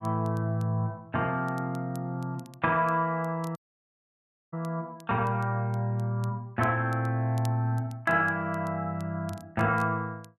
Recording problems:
crackling; vinyl, SNR 27 dB
audio cutting out; at 3.5 s for 1 s

